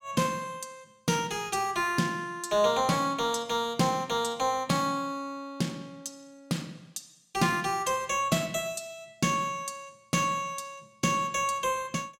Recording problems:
none

